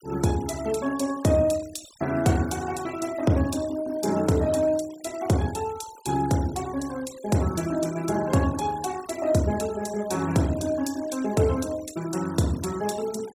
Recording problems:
denoising artefacts; signal-to-artefact ratio 18 dB

